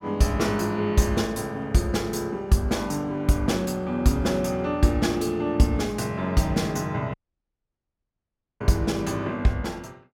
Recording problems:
audio cutting out; at 7 s for 1.5 s

